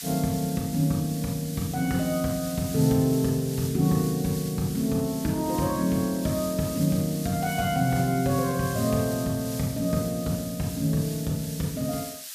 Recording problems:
hiss; SNR 11 dB

